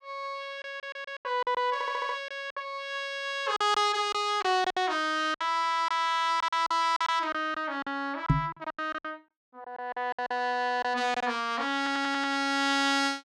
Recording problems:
lost packets; 11% of the sound replaced, filled with silence
audio stuttering; at 0.5 s, at 1.5 s and at 12 s
microphone bump; at 8.5 s; peak +8 dB vs average level

